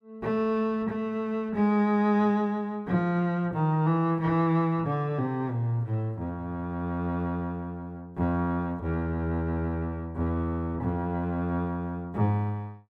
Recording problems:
none

